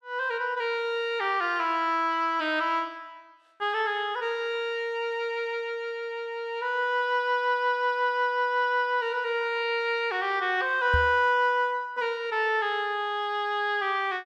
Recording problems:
microphone thump; at 11 s; peak +2 dB vs average level

